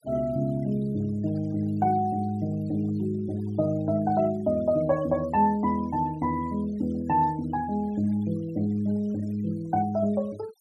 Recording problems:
denoising artefacts; signal-to-artefact ratio 25 dB

